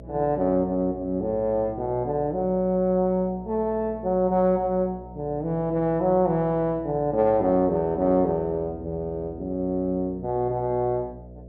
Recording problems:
hum; 60 Hz, harmonics up to 660 Hz, SNR 18 dB

